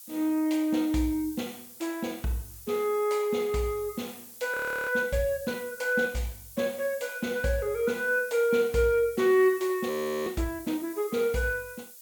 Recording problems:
background hiss; SNR 17 dB
frozen audio; at 4.5 s and at 10 s

